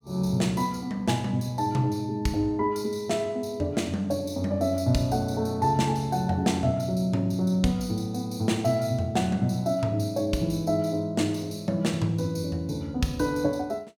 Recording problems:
none

